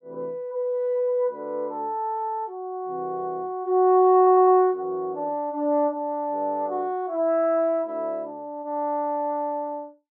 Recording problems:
stutter; at 4 s

